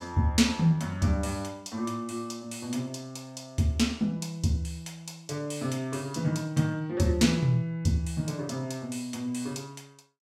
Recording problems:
none

